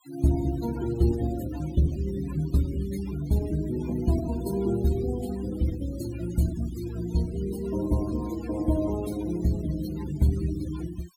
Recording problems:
noise reduction artefacts; signal-to-artefact ratio 16 dB

